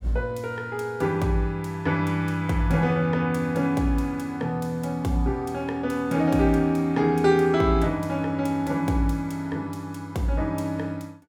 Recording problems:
none

